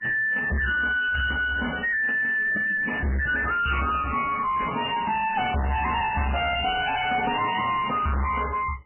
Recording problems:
codec artefacts; AAC, then MP3, log-spectral distance 6 dB, nothing above 2.9 kHz
distortion; soft clipping, signal-to-distortion ratio 5 dB

